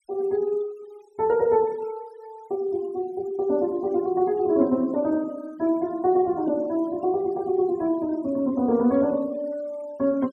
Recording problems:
noise reduction artefacts; signal-to-artefact ratio 26 dB

